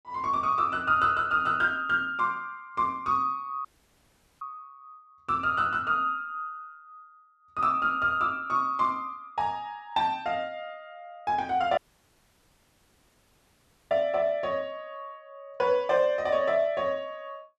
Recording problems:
dropout; at 3.5 s for 1 s and at 12 s for 2 s

